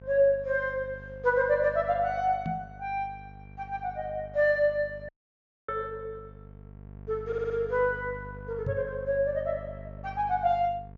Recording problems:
treble missing; nothing above 7.2 kHz
hum; 50 Hz, harmonics up to 700 Hz, SNR 17 dB
microphone thump; at 2.5 s and at 8.5 s; peak -1 dB vs average level
dropout; at 5 s for 0.5 s
stutter; at 7.5 s

